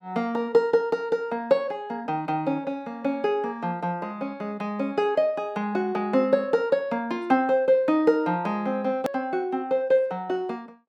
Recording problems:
click at an edit; at 9 s

